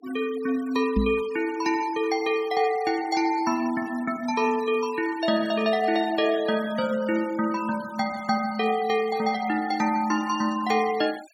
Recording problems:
denoising artefacts; signal-to-artefact ratio 19 dB
microphone bump; at 1 s; peak +4 dB vs average level

